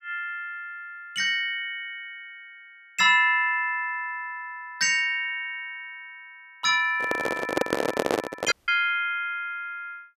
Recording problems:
handling noise; from 7 to 8.5 s; peak +5 dB vs average level
dropout; at 8.5 s

